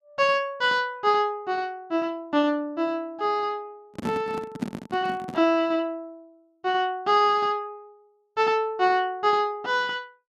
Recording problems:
microphone handling noise; from 4 to 5.5 s; peak +1 dB vs average level

